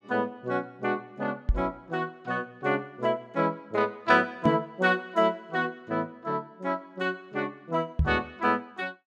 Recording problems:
knock on the microphone; at 1.5 s, at 4.5 s and at 8 s; peak +8 dB vs average level

